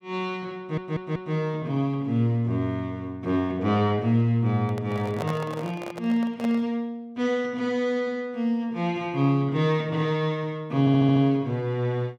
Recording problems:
audio stuttering; at 0.5 s and at 11 s
handling noise; from 4.5 to 6.5 s; peak -3 dB vs average level

